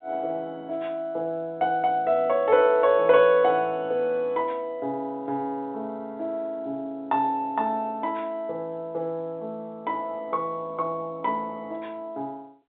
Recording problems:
telephone audio; 190 Hz to 3.8 kHz, G.711

